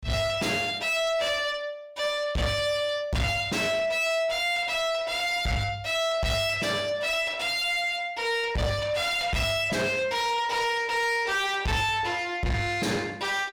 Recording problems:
distortion; soft clipping, signal-to-distortion ratio 7 dB

